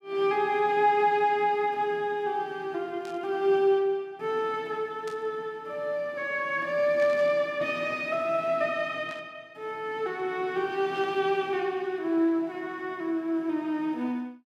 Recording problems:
static burst; 5 times, first at 3 s; peak -13 dB vs average level

